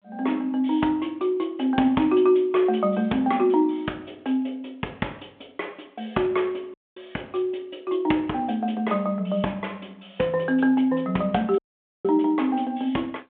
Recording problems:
phone line; 280 Hz to 3.8 kHz, G.726
audio cutting out; at 6.5 s and at 12 s

